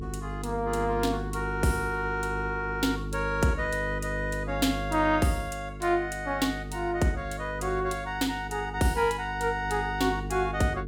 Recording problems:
mains hum; 50 Hz, harmonics up to 450 Hz, SNR 8 dB

